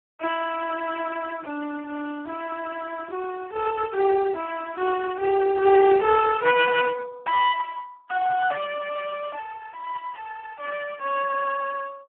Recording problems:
telephone audio; 320 Hz to 2.6 kHz, Speex
burst of static; 4 times, first at 1 s; peak -18 dB vs average level

